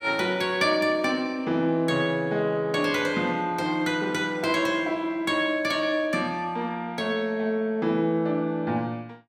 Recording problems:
none

